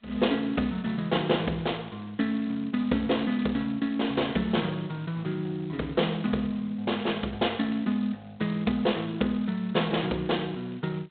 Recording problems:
phone line; 190 Hz to 3.7 kHz, G.726

